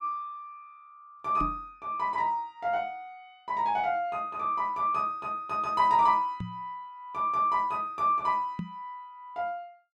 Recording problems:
microphone bump; at 1.5 s, at 6.5 s and at 8.5 s; peak -2 dB vs average level

